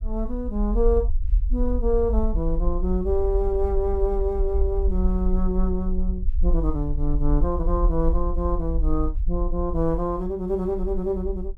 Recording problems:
rumble; below 52 Hz, SNR 1 dB

